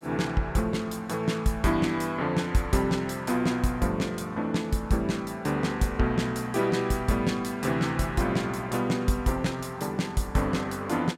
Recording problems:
none

